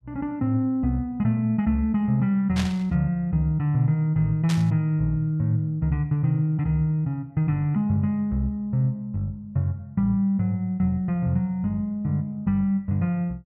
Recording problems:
burst of static; at 2.5 s and at 4.5 s; peak -4 dB vs average level

